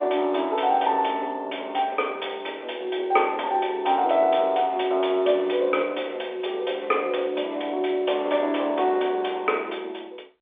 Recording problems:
phone line; 320 Hz to 3.6 kHz, G.711

